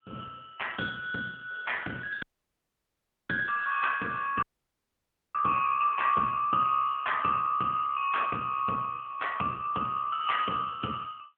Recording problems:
telephone audio; 150 Hz to 3.3 kHz, AMR-NB
audio cutting out; at 2 s for 1 s and at 4.5 s for 1 s

